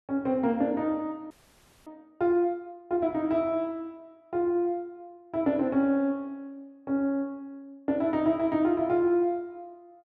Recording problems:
frozen audio; at 1.5 s for 0.5 s

